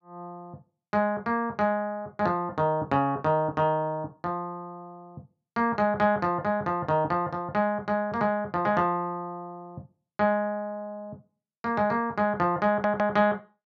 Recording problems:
audio stuttering; at 13 s

